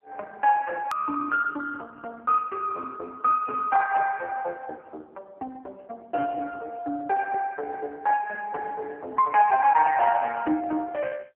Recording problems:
phone line; 260 Hz to 2.1 kHz, AMR-NB
hard cut with a click; at 1 s

